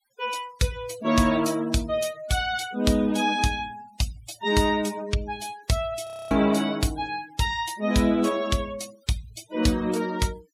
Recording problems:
noise reduction artefacts; signal-to-artefact ratio 19 dB
audio freezing; at 6 s

